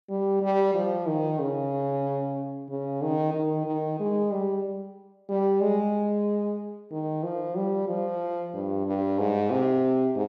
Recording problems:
none

